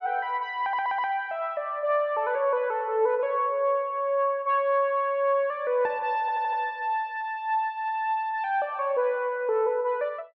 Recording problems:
audio stuttering; at 0.5 s and at 6 s

